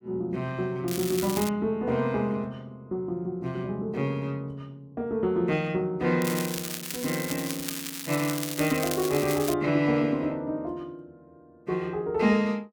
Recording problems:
crackling; at 1 s and from 6 to 9.5 s; loose cable, SNR 6 dB

